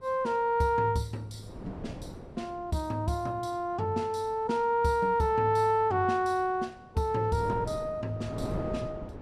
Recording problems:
wind on the microphone; below 470 Hz, SNR 11 dB

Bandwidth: 14.5 kHz